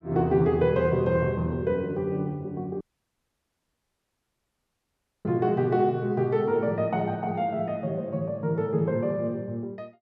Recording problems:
dropout; at 3 s for 2.5 s

